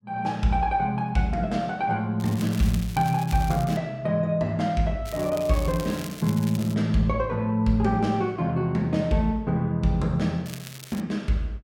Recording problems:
crackle; from 2 to 4 s, from 5 to 6.5 s and at 10 s; loose cable, SNR 17 dB

